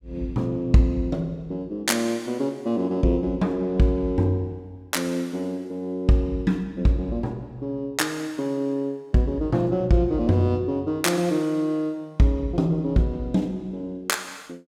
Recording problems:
none

